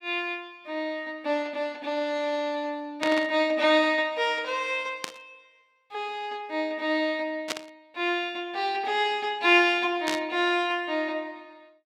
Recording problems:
static burst; 4 times, first at 3 s; peak +1 dB vs average level

